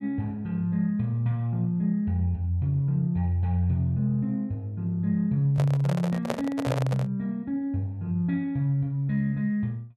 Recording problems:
microphone handling noise; from 5.5 to 7 s; peak +2 dB vs average level

